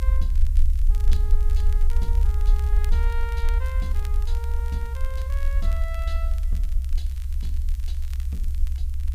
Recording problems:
background hiss; slope 0 dB per octave, SNR 16 dB
low-frequency rumble; below 66 Hz, SNR -13 dB
crackle; vinyl, SNR 13 dB

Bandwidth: 15.5 kHz